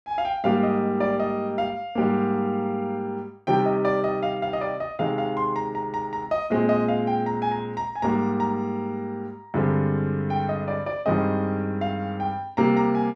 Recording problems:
none

